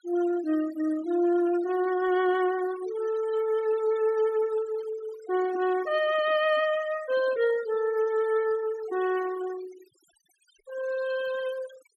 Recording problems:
denoising artefacts; signal-to-artefact ratio 16 dB

